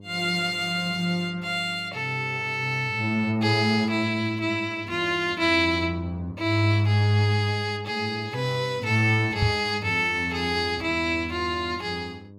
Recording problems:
mains hum; 50 Hz, harmonics up to 600 Hz, SNR 22 dB
knock on the microphone; at 9.5 s; peak +4 dB vs average level

